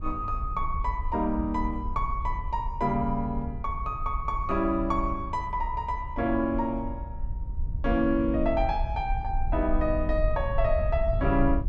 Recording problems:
wind on the microphone; below 66 Hz, SNR 5 dB

